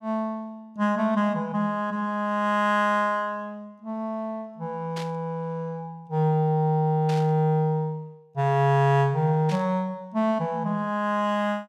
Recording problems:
static burst; at 5 s, at 7 s and at 9.5 s; peak -9 dB vs average level

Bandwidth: 14.5 kHz